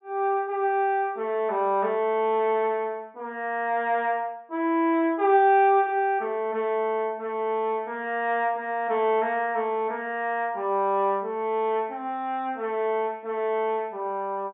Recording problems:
low-pass filter; nothing above 4 kHz

